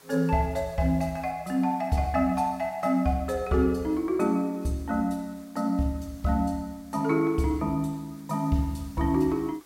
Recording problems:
hiss; SNR 27 dB

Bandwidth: 16 kHz